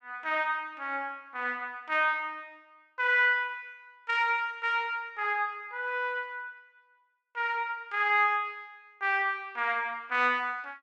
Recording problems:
none

